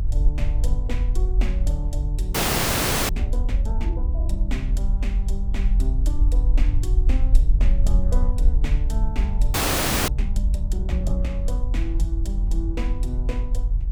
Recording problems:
hum; 50 Hz, harmonics up to 500 Hz, SNR 3 dB
rumble; below 50 Hz, SNR -9 dB
frozen audio; at 2.5 s for 1 s and at 9.5 s for 0.5 s

